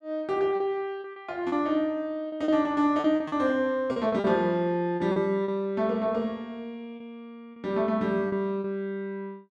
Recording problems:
lost packets; 8% of the sound replaced, filled with repeated pitch periods

